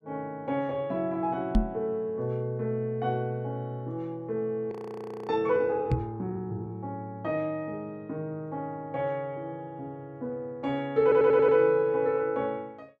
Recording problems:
knock on the microphone; at 1.5 s and at 6 s; peak +8 dB vs average level
audio freezing; at 4.5 s for 0.5 s
audio stuttering; at 11 s

